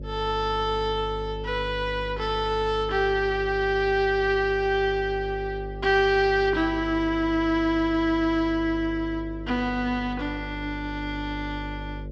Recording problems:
hum; 50 Hz, harmonics up to 600 Hz, SNR 12 dB

